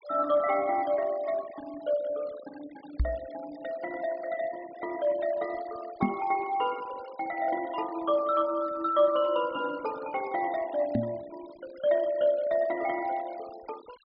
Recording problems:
treble missing; nothing above 5.5 kHz
noise reduction artefacts; signal-to-artefact ratio 21 dB
microphone thump; at 3 s, at 6 s and at 11 s; peak +6 dB vs average level

